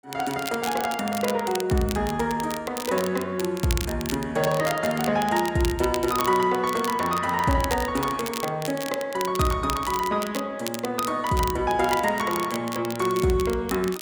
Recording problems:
crackle; vinyl, SNR 11 dB

